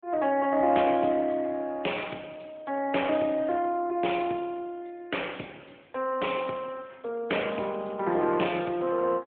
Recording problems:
telephone audio; 240 Hz to 3.4 kHz, AMR-NB

